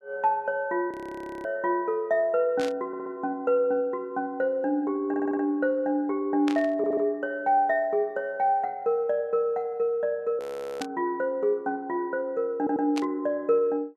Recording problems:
audio freezing; at 1 s for 0.5 s and at 10 s
static burst; 5 times, first at 1.5 s; peak -4 dB vs average level
audio stuttering; 4 times, first at 3 s

